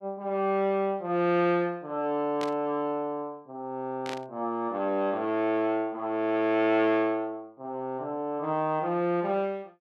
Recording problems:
static burst; at 2.5 s and at 4 s; peak -5 dB vs average level

